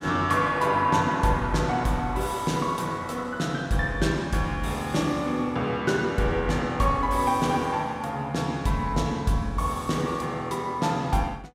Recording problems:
none

